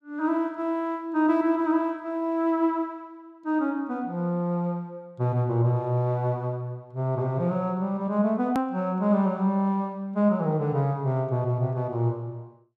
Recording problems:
click at an edit; at 8.5 s

